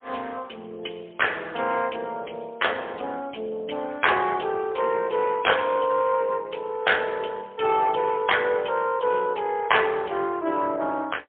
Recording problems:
telephone audio; 240 Hz to 3.4 kHz, AMR-NB, then MP3

